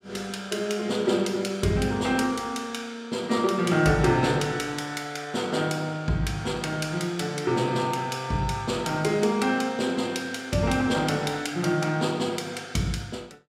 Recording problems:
none

